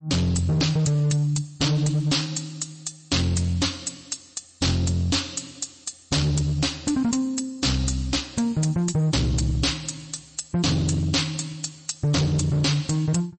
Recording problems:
lossy codec; MP3, log-spectral distance 7 dB, nothing above 8.2 kHz
distortion; hard clipping, signal-to-distortion ratio 5 dB

